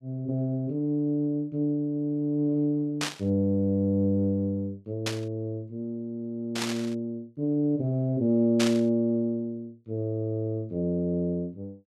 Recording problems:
static burst; 4 times, first at 3 s; peak +3 dB vs average level

